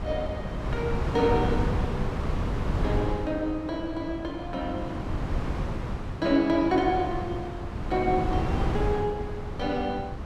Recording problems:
wind noise; below 290 Hz, SNR 3 dB

